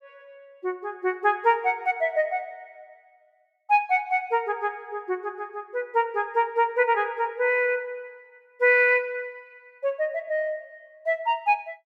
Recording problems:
none

